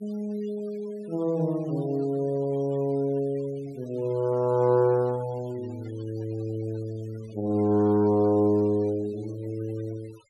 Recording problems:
noise reduction artefacts; signal-to-artefact ratio 25 dB

